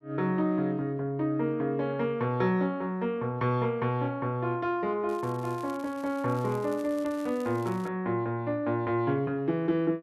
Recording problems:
crackle; from 5 to 8 s; loose cable, SNR 23 dB

